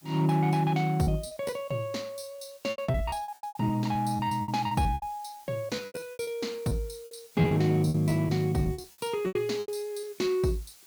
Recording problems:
background hiss; slope +1 dB per octave, SNR 24 dB
lost packets; 17% of the sound replaced, filled with repeated pitch periods

